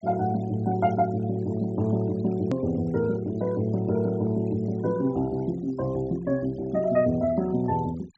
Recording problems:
treble cut off; nothing above 7.9 kHz
denoising artefacts; signal-to-artefact ratio 22 dB
edit click; at 2.5 s

